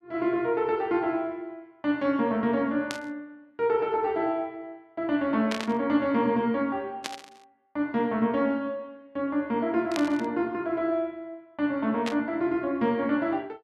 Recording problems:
static burst; 5 times, first at 3 s; peak -1 dB vs average level

